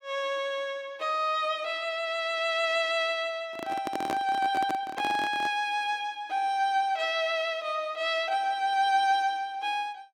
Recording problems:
handling noise; from 3.5 to 5.5 s; peak -1 dB vs average level

